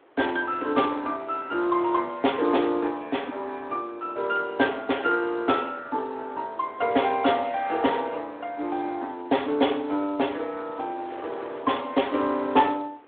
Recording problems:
phone line; 240 Hz to 3.5 kHz, Speex
wind on the microphone; below 1.3 kHz, SNR 23 dB

